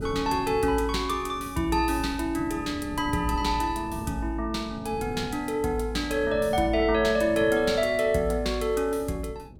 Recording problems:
wind noise; below 250 Hz, SNR 15 dB

